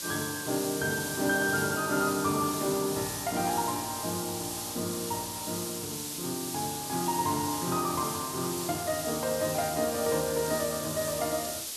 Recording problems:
background hiss; SNR 4 dB

